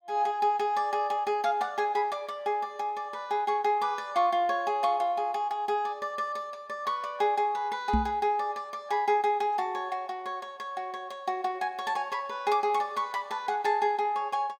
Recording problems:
microphone bump; at 8 s; peak +5 dB vs average level

